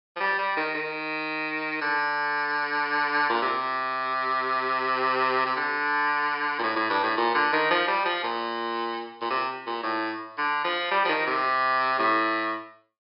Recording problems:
treble missing; nothing above 5.5 kHz

